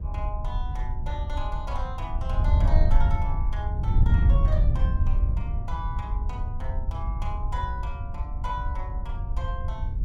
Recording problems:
wind on the microphone; below 78 Hz, SNR -10 dB

